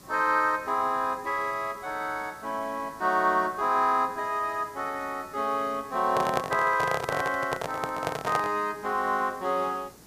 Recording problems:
hiss; SNR 22 dB
microphone handling noise; from 6 to 8.5 s; peak +2 dB vs average level

